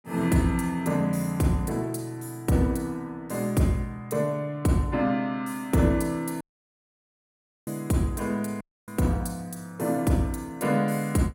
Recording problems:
dropout; at 6.5 s for 1.5 s and at 8.5 s

